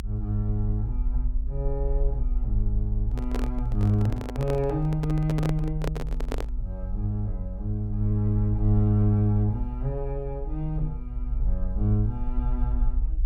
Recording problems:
rumble; below 52 Hz, strongest tone 30 Hz, SNR 4 dB
handling noise; from 3 to 6.5 s; peak -1 dB vs average level

